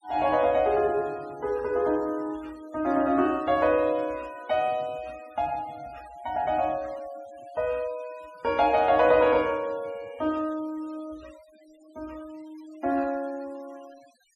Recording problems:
noise reduction artefacts; signal-to-artefact ratio 25 dB

